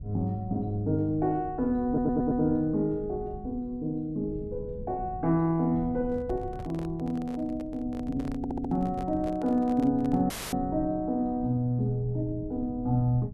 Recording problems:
low-frequency rumble; below 150 Hz, SNR 15 dB
audio stuttering; at 2 s and at 8.5 s
handling noise; from 6 to 10 s; peak -10 dB vs average level
audio cutting out; at 10 s; filled with static

